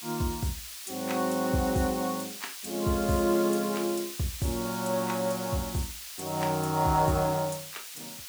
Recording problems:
hiss; slope +5 dB per octave, SNR 9 dB

